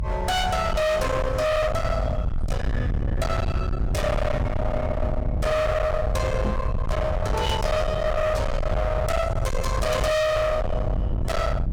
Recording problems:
distorted audio; hard clipping, signal-to-distortion ratio 6 dB
rumble; below 580 Hz, SNR 2 dB
knock on the microphone; at 6.5 s; peak 0 dB vs average level

